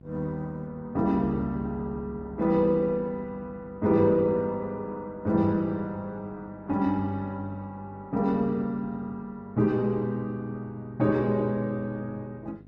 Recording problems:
lossy codec; Opus, log-spectral distance 2 dB
hum; 50 Hz, harmonics up to 750 Hz, SNR 23 dB

